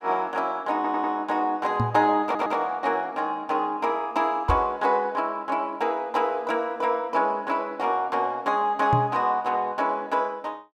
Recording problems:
stutter; at 1 s and at 2 s
microphone thump; at 2 s, at 4.5 s and at 9 s; peak +3 dB vs average level

